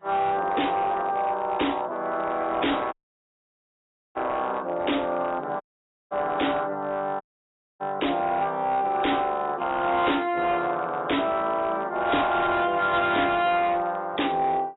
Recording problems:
lossy compression; AAC, log-spectral distance 3 dB, nothing above 3.8 kHz
distortion; hard clipping, signal-to-distortion ratio 11 dB
dropout; at 3 s for 1 s, at 5.5 s and at 7 s for 0.5 s

